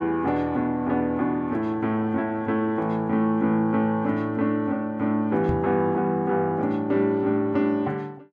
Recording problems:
microphone bump; at 5.5 s; peak +1 dB vs average level

